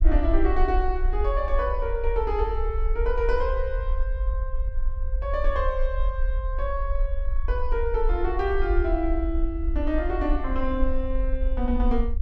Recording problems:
rumble; below 52 Hz, SNR 0 dB

